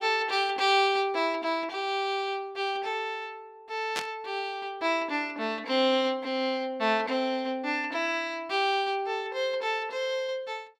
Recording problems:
static burst; at 4 s; peak +1 dB vs average level

